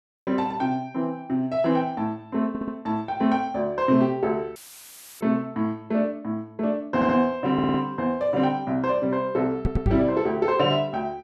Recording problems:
audio stuttering; 4 times, first at 2.5 s
audio cutting out; at 4.5 s for 0.5 s; filled with static
microphone bump; at 9.5 s; peak +5 dB vs average level

